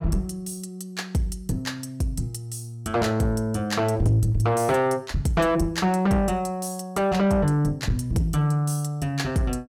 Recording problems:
distorted audio; soft clipping, signal-to-distortion ratio 11 dB

